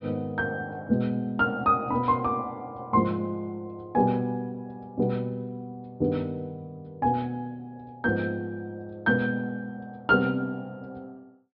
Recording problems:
treble cut off; nothing above 5.5 kHz

